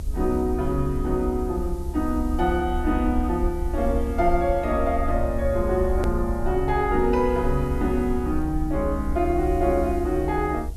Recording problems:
background hiss; slope +4 dB per octave, SNR 27 dB
low-frequency rumble; below 68 Hz, SNR 6 dB
hard cut with a click; at 6 s

